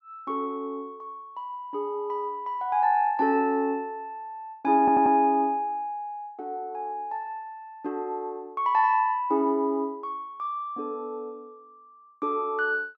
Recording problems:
stutter; at 5 s

